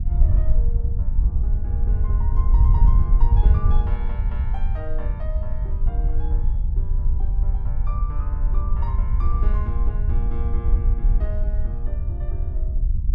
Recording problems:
wind on the microphone; below 62 Hz, SNR -16 dB

